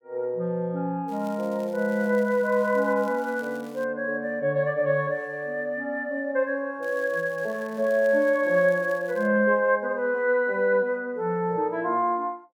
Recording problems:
crackle; from 1 to 4 s and from 7 to 9.5 s; loose cable, SNR 27 dB

